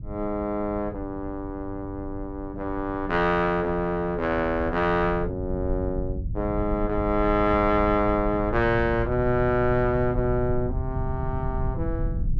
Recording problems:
low-frequency rumble; below 110 Hz, SNR 8 dB

